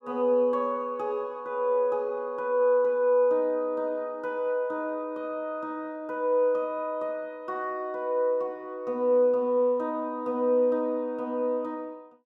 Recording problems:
none

